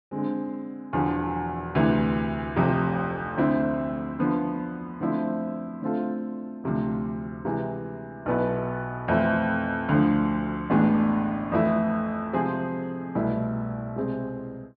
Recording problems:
treble missing; nothing above 5.3 kHz

